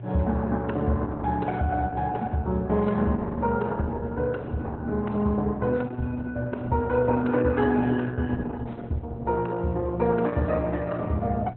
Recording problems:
lossy compression; Opus, log-spectral distance 2 dB, nothing above 4 kHz
mains hum; 60 Hz, harmonics up to 720 Hz, SNR 14 dB

